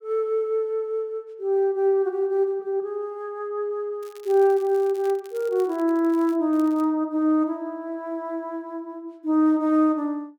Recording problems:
crackling; from 4 to 6.5 s and at 6.5 s; loose cable, SNR 27 dB

